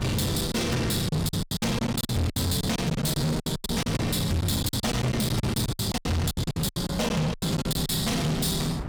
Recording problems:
distortion; soft clipping, signal-to-distortion ratio 7 dB
hum; 60 Hz, harmonics up to 1.3 kHz, SNR 11 dB
wind on the microphone; below 560 Hz, SNR 10 dB
packet loss; 17% of the sound replaced, filled with silence

